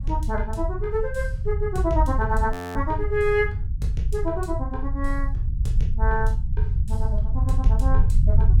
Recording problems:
rumble; below 78 Hz, SNR -1 dB
frozen audio; at 2.5 s

